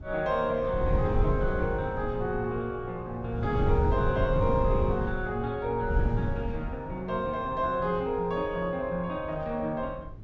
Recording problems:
treble cut off; nothing above 8 kHz
wind noise; below 130 Hz, SNR 2 dB

